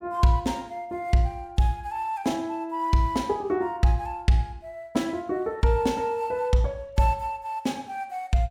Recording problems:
none

